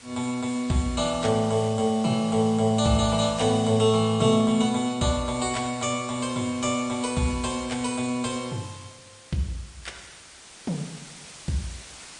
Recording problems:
lossy compression; MP3, log-spectral distance 8 dB, nothing above 8.7 kHz
background hiss; slope 0 dB per octave, SNR 19 dB

